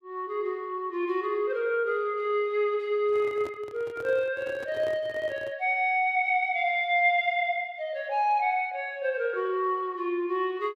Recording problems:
handling noise; from 3 to 5.5 s; peak -9 dB vs average level

